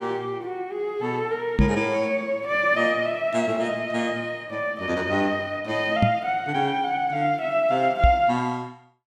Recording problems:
knock on the microphone; at 1.5 s, at 6 s and at 8 s; peak +8 dB vs average level

